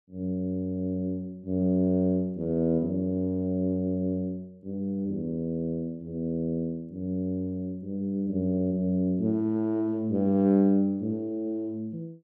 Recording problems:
none

